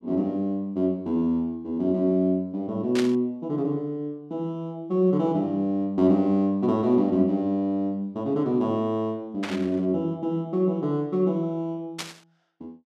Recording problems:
burst of static; at 3 s, at 9.5 s and at 12 s; peak -2 dB vs average level

